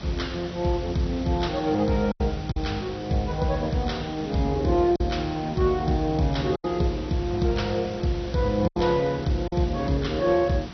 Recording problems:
lossy compression; MP2, log-spectral distance 5 dB, nothing above 6 kHz
background hiss; slope -3 dB per octave, SNR 14 dB
packet loss; 3% of the sound replaced, filled with silence

